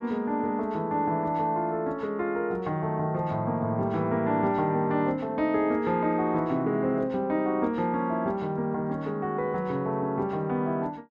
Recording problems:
none

